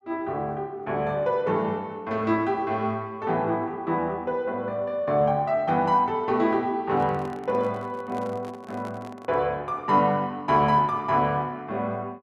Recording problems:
handling noise; from 7 to 9.5 s; peak -11 dB vs average level

